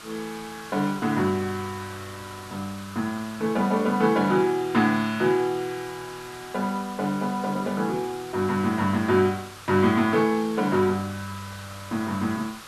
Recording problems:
hiss; SNR 17 dB

